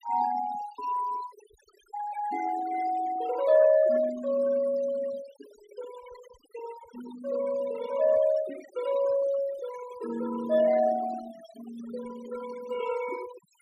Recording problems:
denoising artefacts; signal-to-artefact ratio 16 dB

